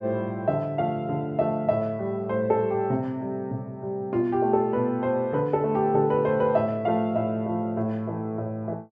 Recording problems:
none

